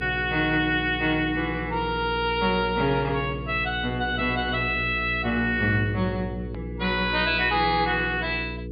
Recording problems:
treble cut off; nothing above 4.8 kHz
hum; 60 Hz, harmonics up to 480 Hz, SNR 10 dB
edit click; at 6.5 s

